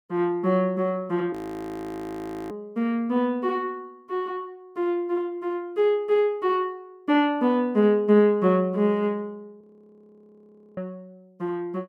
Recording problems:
frozen audio; at 1.5 s for 1 s and at 9.5 s for 1 s

